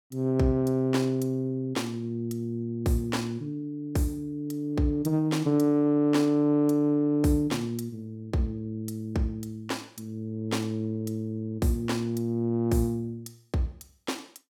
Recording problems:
none

